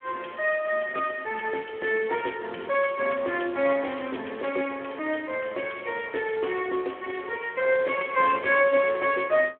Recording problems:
telephone audio; 280 Hz to 3.3 kHz, Speex

